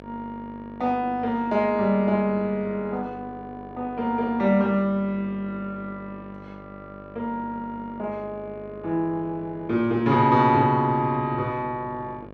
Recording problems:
electrical hum; 50 Hz, harmonics up to 1.9 kHz, SNR 19 dB

